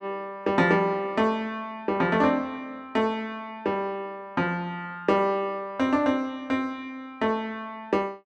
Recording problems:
none

